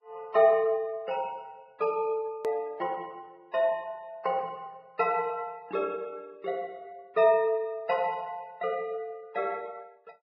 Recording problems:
codec artefacts; Vorbis, log-spectral distance 2 dB
edit click; at 2.5 s

